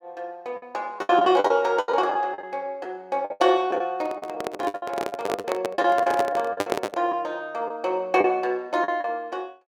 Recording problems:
packet loss; 13% of the sound replaced, filled with the last packet
microphone handling noise; from 4 to 7 s; peak +4 dB vs average level

